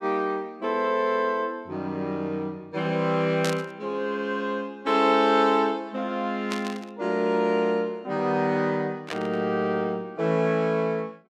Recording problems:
static burst; at 3.5 s, at 6.5 s and at 9 s; peak -1 dB vs average level

